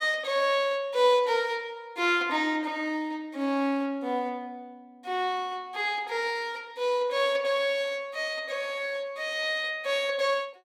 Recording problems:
none

